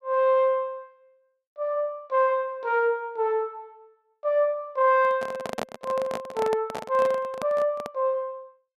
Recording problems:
handling noise; from 5 to 8 s; peak -1 dB vs average level

